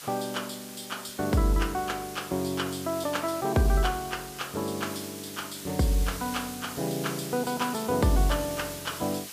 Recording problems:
hiss; slope +2 dB per octave, SNR 10 dB

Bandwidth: 15 kHz